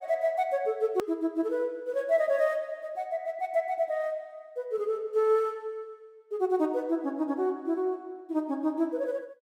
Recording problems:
hard cut with a click; at 1 s

